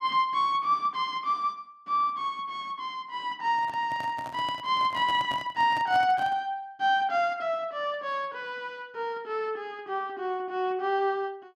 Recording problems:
microphone handling noise; from 3.5 to 6.5 s; peak -7 dB vs average level

